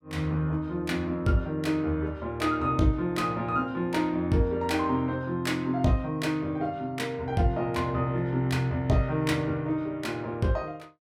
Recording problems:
none

